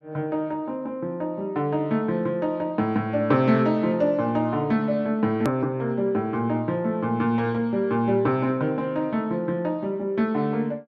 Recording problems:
click at an edit; at 5.5 s

